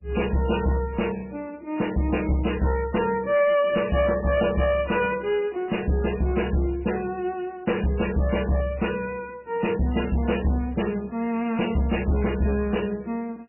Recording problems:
lossy compression; MP3, log-spectral distance 5 dB, nothing above 2.9 kHz
distorted audio; hard clipping, uneven, signal-to-distortion ratio 11 dB

